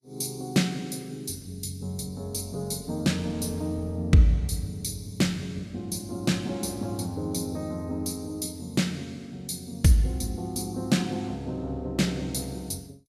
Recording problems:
lossy compression; Vorbis, log-spectral distance 4 dB, nothing above 12.3 kHz

